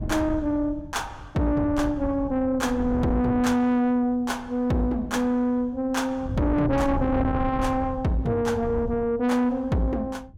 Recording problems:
distortion; soft clipping, signal-to-distortion ratio 10 dB
wind on the microphone; below 150 Hz, SNR 9 dB

